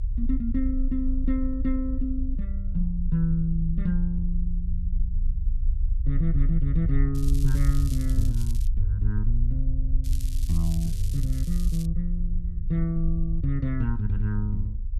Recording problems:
rumble; below 54 Hz, strongest tone 26 Hz, SNR 0 dB
crackling; from 7 to 8.5 s and from 10 to 12 s; loose cable, SNR 15 dB

